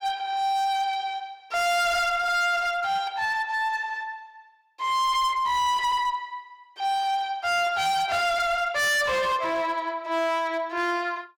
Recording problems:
distorted audio; hard clipping, signal-to-distortion ratio 7 dB

